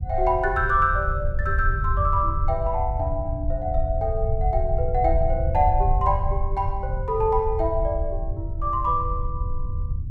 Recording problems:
rumble; below 82 Hz, SNR 3 dB

